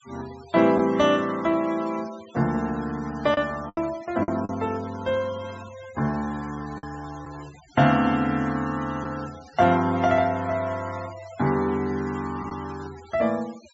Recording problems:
treble missing; nothing above 8 kHz
denoising artefacts; signal-to-artefact ratio 20 dB
packet loss; 2% of the sound replaced, filled with the last packet

